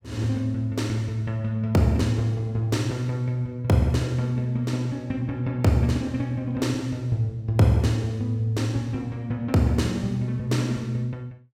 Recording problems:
none

